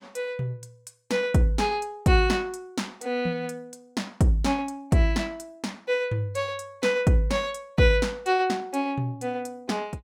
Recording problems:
none

